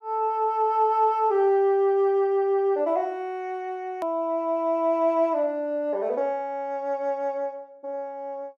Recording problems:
edit click; at 4 s

